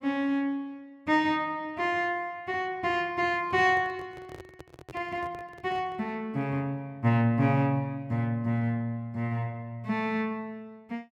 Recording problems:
microphone handling noise; from 3.5 to 6 s; peak -12 dB vs average level

